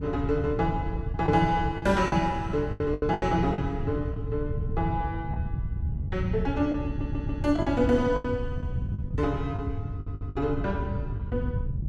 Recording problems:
wind on the microphone; below 130 Hz, SNR 5 dB
packet loss; 7% of the sound replaced, filled with the last packet
audio stuttering; at 7 s and at 10 s

